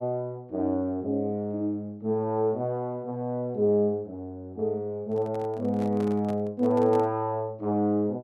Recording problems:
microphone handling noise; from 5 to 7 s; peak -9 dB vs average level

